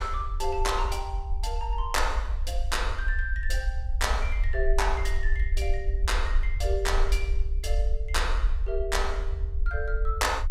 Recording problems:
low-frequency rumble; below 56 Hz, SNR -1 dB

